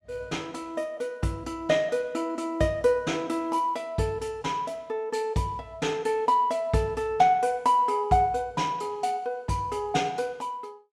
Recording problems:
none

